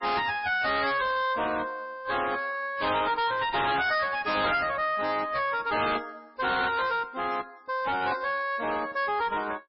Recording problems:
codec artefacts; MP3, log-spectral distance 4 dB, nothing above 5.3 kHz
distorted audio; hard clipping, uneven, signal-to-distortion ratio 5 dB

